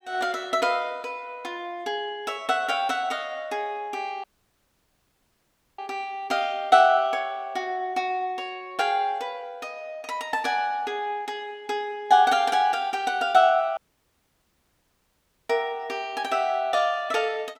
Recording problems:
audio cutting out; at 4 s for 1.5 s and at 14 s for 1.5 s

